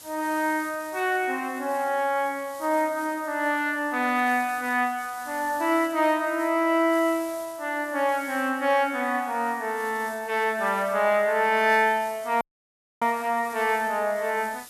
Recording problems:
background hiss; SNR 20 dB
audio cutting out; at 12 s for 0.5 s

